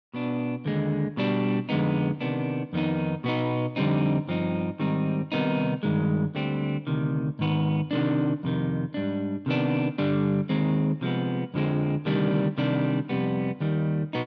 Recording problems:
none

